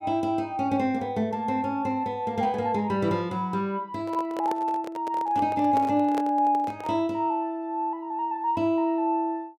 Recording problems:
handling noise; from 4 to 7 s; peak -3 dB vs average level

